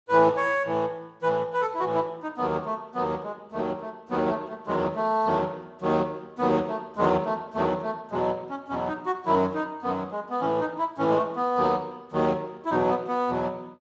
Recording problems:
lossy codec; Speex, log-spectral distance 3 dB

